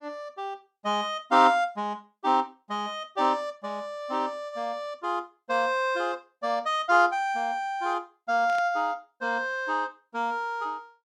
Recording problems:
static burst; at 8.5 s; peak -12 dB vs average level

